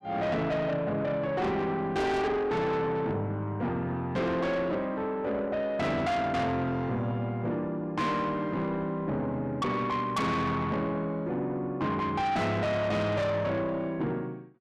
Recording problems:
distorted audio; soft clipping, signal-to-distortion ratio 7 dB

